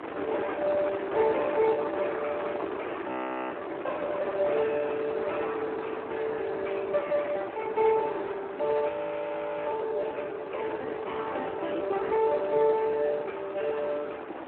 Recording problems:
telephone audio; 260 Hz to 3.3 kHz, Speex
wind on the microphone; below 1.2 kHz, SNR 8 dB
frozen audio; at 3 s and at 9 s for 1 s

